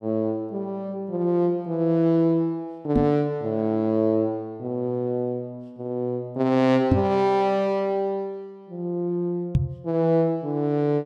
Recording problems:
microphone thump; at 3 s, at 7 s and at 9.5 s; peak +7 dB vs average level

